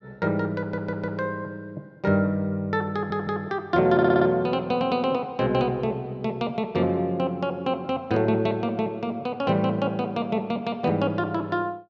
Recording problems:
audio stuttering; at 0.5 s, at 3 s and at 4 s

